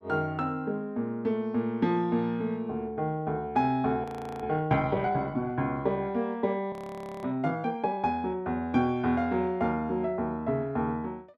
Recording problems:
frozen audio; at 4 s and at 6.5 s for 0.5 s

